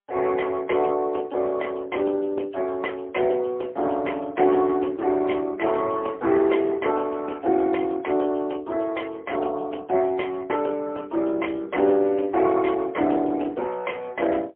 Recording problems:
telephone audio; 300 Hz to 3.2 kHz, AMR-NB, then MP3

